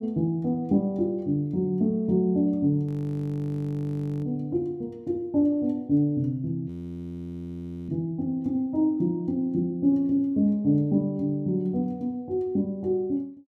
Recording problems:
audio freezing; at 3 s for 1.5 s and at 6.5 s for 1 s

